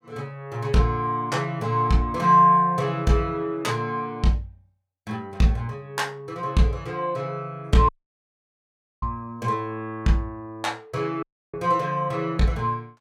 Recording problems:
dropout; at 8 s for 1 s and at 11 s

